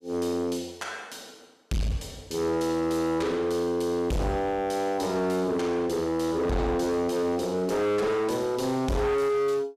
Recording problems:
distorted audio; hard clipping, uneven, signal-to-distortion ratio 7 dB

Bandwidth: 14.5 kHz